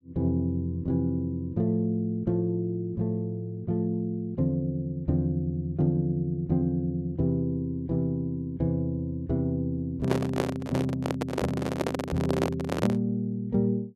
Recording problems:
handling noise; from 10 to 13 s; peak +5 dB vs average level

